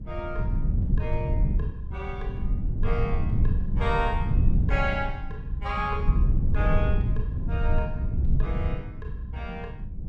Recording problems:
rumble; below 98 Hz, SNR -5 dB

